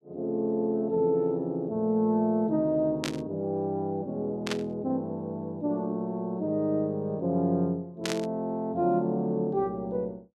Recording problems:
static burst; at 3 s, at 4.5 s and at 8 s; peak +1 dB vs average level

